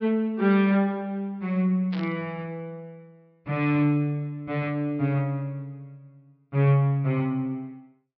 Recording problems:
low-pass filter; nothing above 5.5 kHz
burst of static; at 2 s; peak -11 dB vs average level

